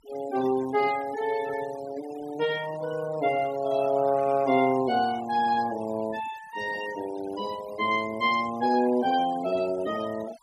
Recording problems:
noise reduction artefacts; signal-to-artefact ratio 17 dB

